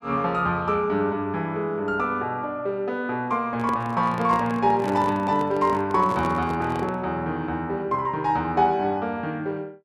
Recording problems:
handling noise; from 3.5 to 7 s; peak -4 dB vs average level

